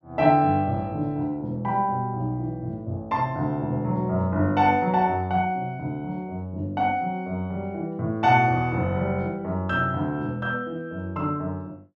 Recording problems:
none

